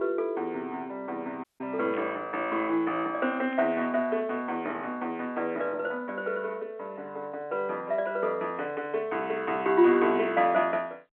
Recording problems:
phone line; 220 Hz to 3.3 kHz, G.711
audio cutting out; at 1.5 s
static burst; at 2 s and at 3.5 s; peak -12 dB vs average level

